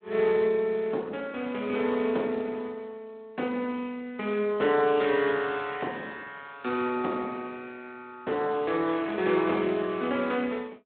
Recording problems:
phone line; 220 Hz to 3.6 kHz, Speex

